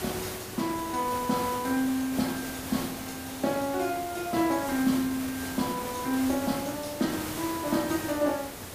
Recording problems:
hiss; slope -4 dB per octave, SNR 7 dB

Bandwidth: 15 kHz